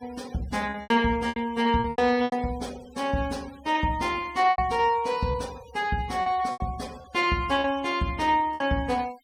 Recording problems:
noise reduction artefacts; signal-to-artefact ratio 22 dB
packet loss; 8% of the sound replaced, filled with repeated pitch periods

